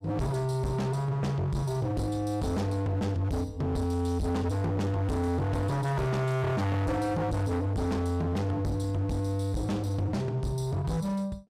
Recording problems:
distorted audio; hard clipping, signal-to-distortion ratio 6 dB

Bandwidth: 15.5 kHz